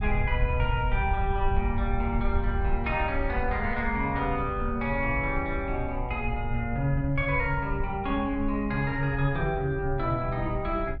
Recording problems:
rumble; below 70 Hz, SNR 5 dB

